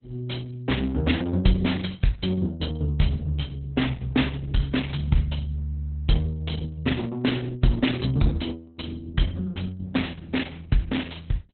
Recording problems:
lossy codec; Opus, log-spectral distance 4 dB, nothing above 4 kHz

